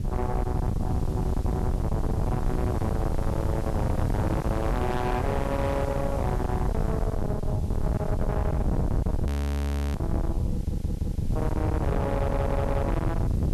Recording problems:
distorted audio; soft clipping, signal-to-distortion ratio 8 dB
background hiss; slope 0 dB per octave, SNR 21 dB
wind on the microphone; below 210 Hz, SNR -2 dB
audio freezing; at 9.5 s for 0.5 s
audio stuttering; at 11 s and at 12 s

